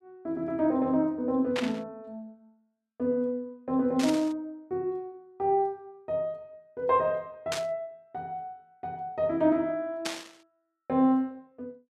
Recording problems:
burst of static; 4 times, first at 1.5 s; peak +1 dB vs average level

